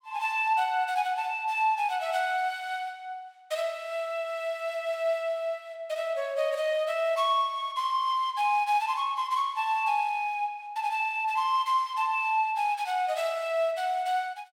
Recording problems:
none

